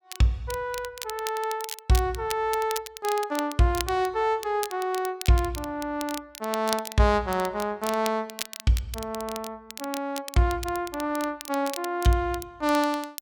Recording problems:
crackle; vinyl, SNR 11 dB

